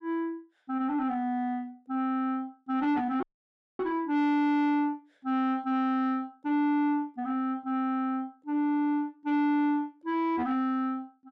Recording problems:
distorted audio; soft clipping, signal-to-distortion ratio 10 dB
audio cutting out; at 3 s for 0.5 s

